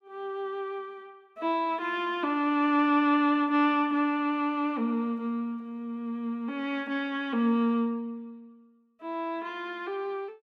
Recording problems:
none

